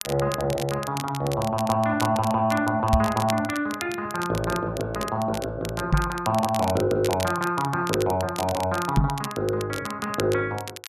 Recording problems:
crackle; vinyl, SNR 12 dB
microphone bump; at 3 s, at 6 s and at 9 s; peak +9 dB vs average level

